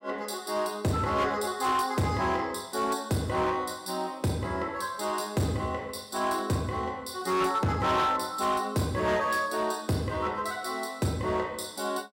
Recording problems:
distorted audio; hard clipping, uneven, signal-to-distortion ratio 11 dB

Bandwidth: 16 kHz